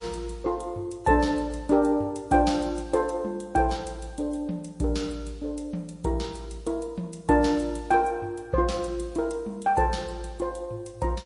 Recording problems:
lossy compression; MP3, log-spectral distance 2 dB, nothing above 10.4 kHz

